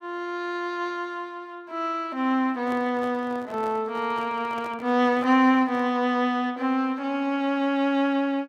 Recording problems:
microphone handling noise; from 2.5 to 6 s; peak -12 dB vs average level

